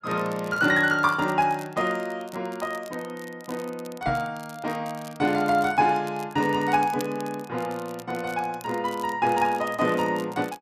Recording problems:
crackle; vinyl, SNR 22 dB
knock on the microphone; at 4 s; peak -4 dB vs average level

